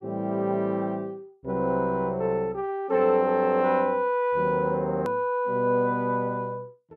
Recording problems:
hard cut with a click; at 5 s

